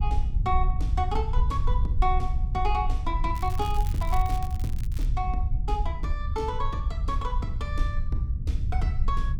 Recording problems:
rumble; below 70 Hz, SNR -3 dB
crackle; from 3.5 to 5 s; loose cable, SNR 14 dB

